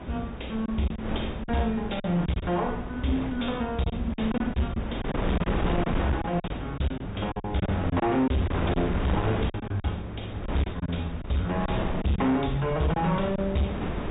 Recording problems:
treble missing; nothing above 4 kHz
distorted audio; hard clipping, signal-to-distortion ratio 11 dB
electrical hum; 60 Hz, harmonics up to 720 Hz, SNR 16 dB
wind on the microphone; below 570 Hz, SNR 5 dB
lost packets; 8% of the sound replaced, filled with silence

